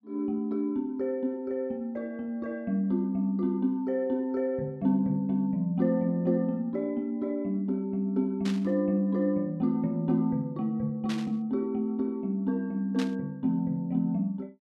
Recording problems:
static burst; at 8.5 s, at 11 s and at 13 s; peak -6 dB vs average level

